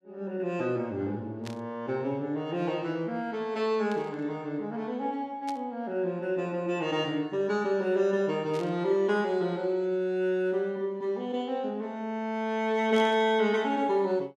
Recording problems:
static burst; 5 times, first at 1.5 s; peak -9 dB vs average level

